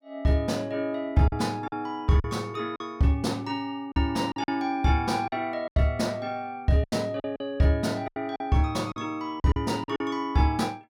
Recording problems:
lost packets; 8% of the sound replaced, filled with silence

